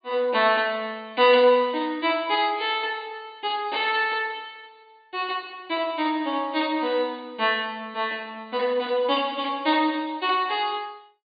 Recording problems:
treble missing; nothing above 4.6 kHz

